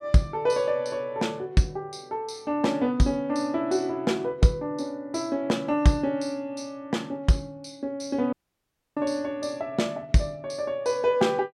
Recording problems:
audio cutting out; at 8.5 s for 0.5 s

